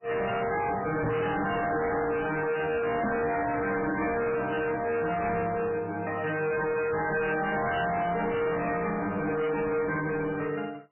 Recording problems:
codec artefacts; MP3, log-spectral distance 6 dB, nothing above 2.8 kHz
distorted audio; hard clipping, signal-to-distortion ratio 6 dB
knock on the microphone; at 1 s and at 3 s; peak +5 dB vs average level

